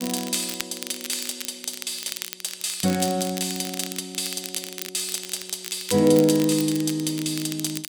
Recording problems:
crackle; vinyl, SNR 9 dB

